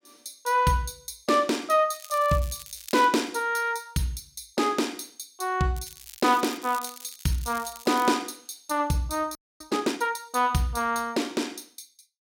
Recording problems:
crackle; from 2 to 3 s and from 6 to 8 s; loose cable, SNR 16 dB
audio freezing; at 9.5 s

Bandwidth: 16.5 kHz